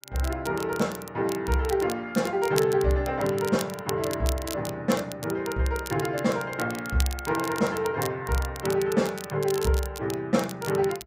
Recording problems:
crackle; vinyl, SNR 13 dB

